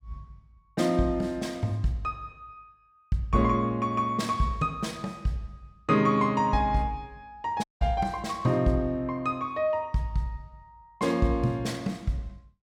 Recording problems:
audio cutting out; at 7.5 s

